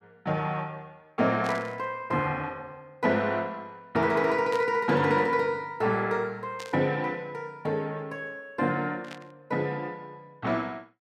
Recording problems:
burst of static; 4 times, first at 1.5 s; peak -8 dB vs average level

